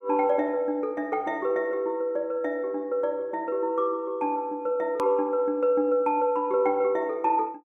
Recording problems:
hard cut with a click; at 5 s

